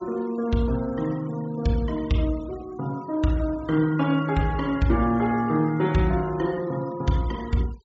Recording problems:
treble cut off; nothing above 8 kHz
denoising artefacts; signal-to-artefact ratio 22 dB

